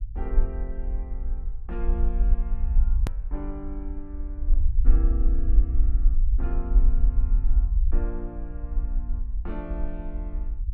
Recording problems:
rumble; below 48 Hz, strongest tone 22 Hz, SNR -13 dB
hard cut with a click; at 3 s

